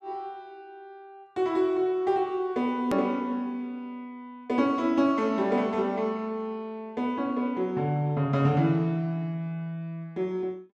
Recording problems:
hard cut with a click; at 3 s

